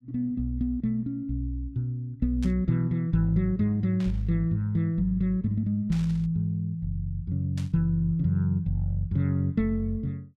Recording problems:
static burst; 4 times, first at 2.5 s; peak -13 dB vs average level

